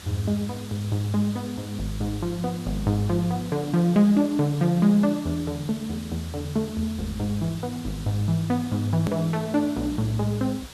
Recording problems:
background hiss; slope -1 dB per octave, SNR 17 dB
click at an edit; at 9 s

